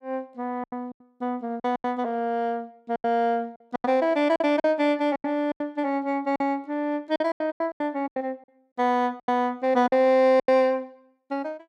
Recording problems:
lost packets; 13% of the sound replaced, filled with silence

